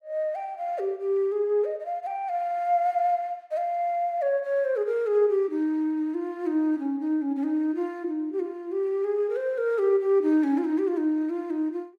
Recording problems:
none

